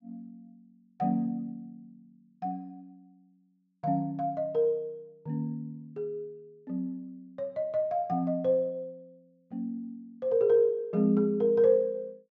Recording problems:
treble cut off; nothing above 8 kHz

